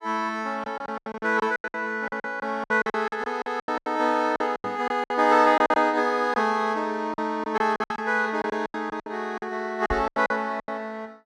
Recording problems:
packet loss; 17% of the sound replaced, filled with silence
microphone bump; at 4.5 s and at 10 s; peak -4 dB vs average level

